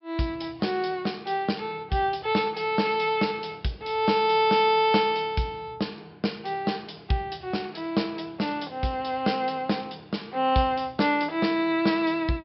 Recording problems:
low-pass filter; nothing above 5.4 kHz

